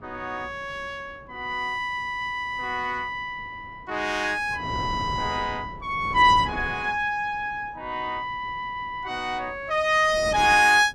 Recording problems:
wind on the microphone; below 450 Hz, SNR 17 dB

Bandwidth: 14 kHz